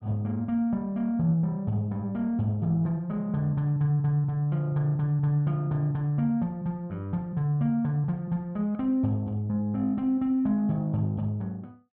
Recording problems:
none

